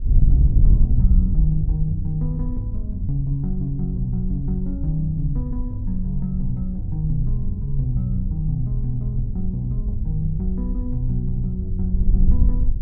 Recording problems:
wind on the microphone; below 64 Hz, SNR -2 dB

